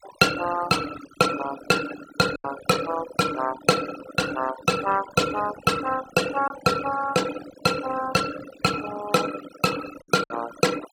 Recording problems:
denoising artefacts; signal-to-artefact ratio 13 dB
lost packets; 2% of the sound replaced, filled with silence

